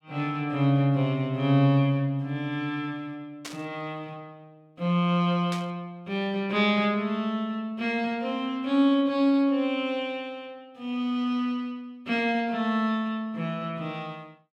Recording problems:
static burst; at 3.5 s and at 5.5 s; peak -7 dB vs average level

